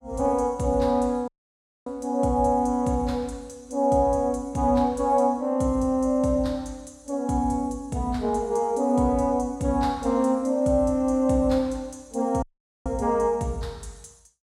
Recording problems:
audio cutting out; at 1.5 s for 0.5 s and at 12 s

